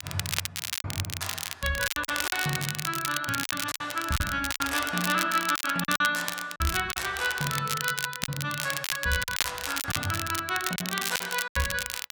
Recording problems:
crackling; vinyl, SNR 3 dB
packet loss; 10% of the sound replaced, filled with silence

